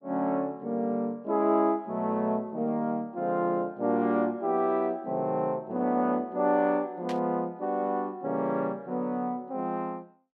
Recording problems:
burst of static; at 7 s; peak -8 dB vs average level

